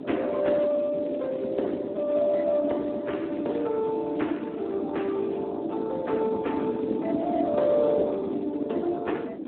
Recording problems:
phone line; 220 Hz to 3.3 kHz, Speex
wind on the microphone; below 390 Hz, SNR 7 dB
crackle; from 0.5 to 1.5 s and from 3 to 5 s; loose cable, SNR 30 dB

